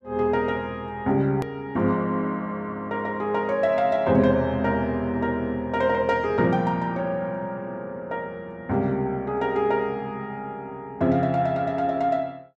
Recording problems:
hard cut with a click; at 1.5 s

